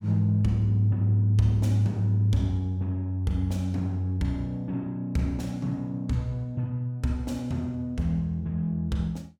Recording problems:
none

